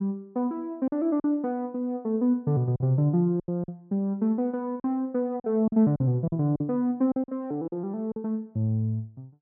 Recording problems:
lost packets; 7% of the sound replaced, filled with silence

